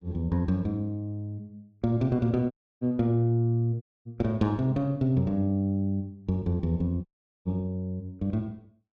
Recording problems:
audio cutting out; at 2.5 s, at 4 s and at 7 s

